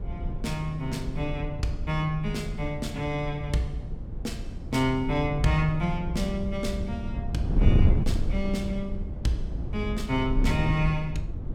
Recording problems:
wind on the microphone; below 120 Hz, SNR 2 dB

